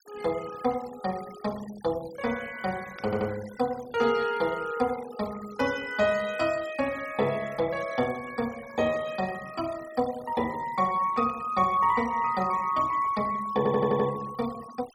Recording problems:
noise reduction artefacts; signal-to-artefact ratio 19 dB
burst of static; at 3 s and at 11 s; peak -14 dB vs average level
stutter; at 3 s and at 14 s

